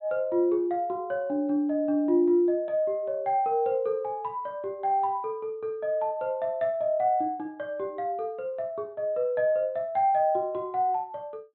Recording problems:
treble cut off; nothing above 4.1 kHz

